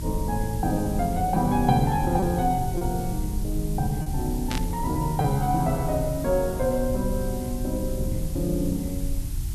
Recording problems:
electrical hum; 60 Hz, harmonics up to 360 Hz, SNR 16 dB
background hiss; SNR 15 dB
low-frequency rumble; below 80 Hz, strongest tone 34 Hz, SNR 7 dB
lost packets; 1.6% of the sound replaced, filled with repeated pitch periods
burst of static; at 4.5 s; peak -2 dB vs average level

